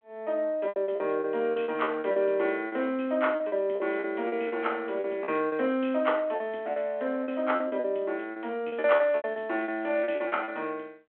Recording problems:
phone line; 280 Hz to 3.3 kHz, G.726
packet loss; 14% of the sound replaced, filled with repeated pitch periods

